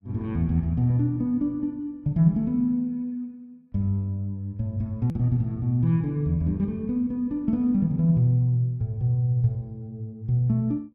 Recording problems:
click at an edit; at 5 s

